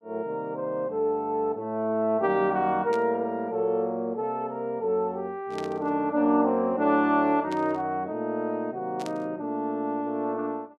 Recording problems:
static burst; 4 times, first at 3 s; peak -9 dB vs average level

